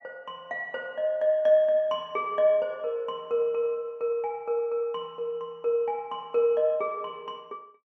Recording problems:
none

